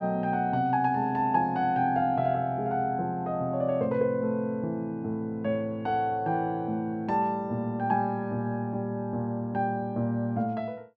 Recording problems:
none

